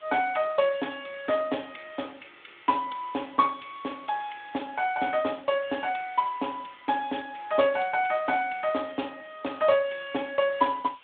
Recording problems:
phone line; 240 Hz to 3.6 kHz, Speex
hiss; SNR 28 dB

